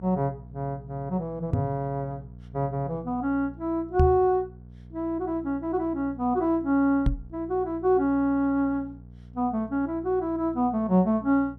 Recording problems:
hum; 60 Hz, harmonics up to 480 Hz, SNR 19 dB
microphone thump; at 1.5 s, at 4 s and at 7 s; peak +7 dB vs average level

